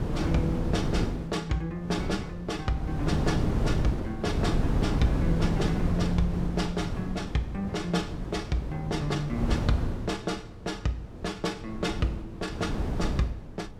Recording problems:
wind noise; below 250 Hz, SNR 0 dB

